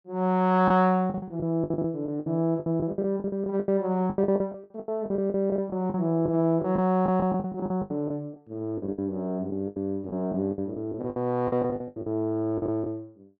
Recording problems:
lost packets; 18% of the sound replaced, filled with the last packet

